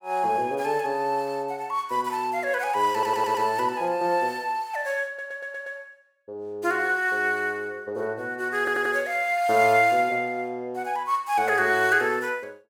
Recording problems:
stutter; at 3 s, at 5 s and at 8.5 s

